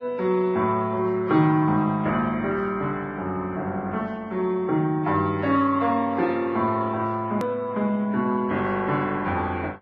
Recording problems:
codec artefacts; AAC, then Vorbis, log-spectral distance 2 dB, nothing above 13.1 kHz
edit click; at 7.5 s

